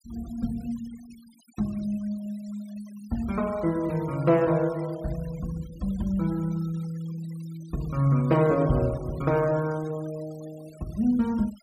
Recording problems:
noise reduction artefacts; signal-to-artefact ratio 23 dB

